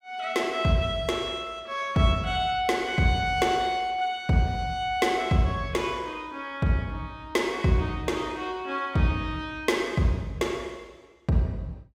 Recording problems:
none

